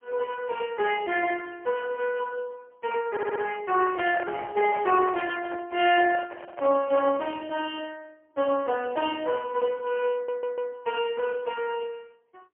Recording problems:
telephone audio; 300 Hz to 3.2 kHz, AMR-NB, then MP3
stutter; at 3 s and at 10 s
microphone handling noise; from 4 to 7.5 s; peak -5 dB vs average level

